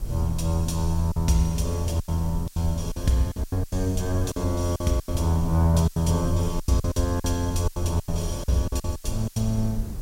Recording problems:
background hiss; slope +3 dB per octave, SNR 22 dB
rumble; below 78 Hz, SNR 10 dB
wind on the microphone; below 550 Hz, SNR 27 dB
packet loss; 13% of the sound replaced, filled with silence

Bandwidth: 16 kHz